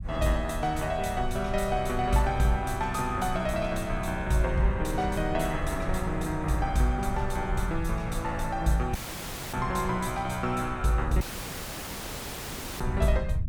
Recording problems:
low-frequency rumble; below 90 Hz, SNR 8 dB
dropout; at 9 s for 0.5 s and at 11 s for 1.5 s

